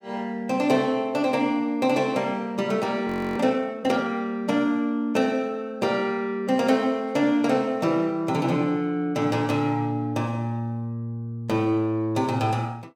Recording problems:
frozen audio; at 3 s

